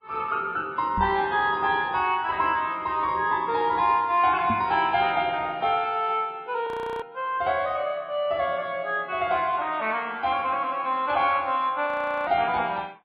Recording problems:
codec artefacts; MP3, log-spectral distance 2 dB
microphone thump; at 1 s and at 4.5 s; peak -2 dB vs average level
frozen audio; at 6.5 s and at 12 s

